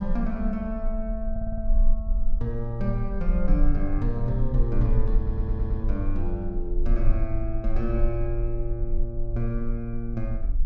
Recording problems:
low-frequency rumble; below 38 Hz, strongest tone 22 Hz, SNR -1 dB
audio stuttering; at 1.5 s and at 5 s

